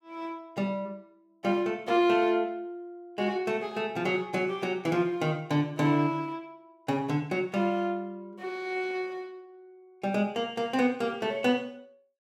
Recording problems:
none

